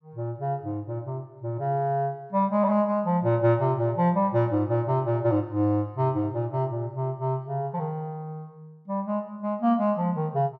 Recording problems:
none

